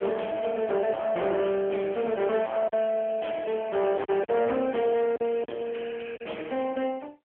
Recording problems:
phone line; 240 Hz to 3.3 kHz, AMR-NB
distorted audio; soft clipping, signal-to-distortion ratio 10 dB
lost packets; 3% of the sound replaced, filled with silence

